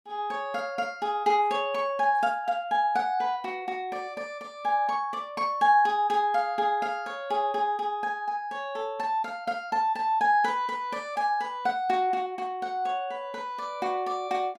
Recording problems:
none

